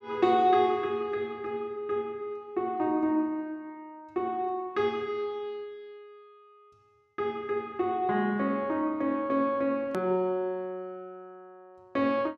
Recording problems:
hard cut with a click; at 10 s

